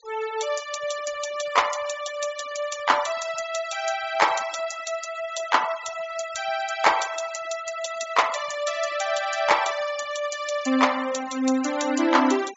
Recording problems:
treble cut off; nothing above 8 kHz
noise reduction artefacts; signal-to-artefact ratio 14 dB

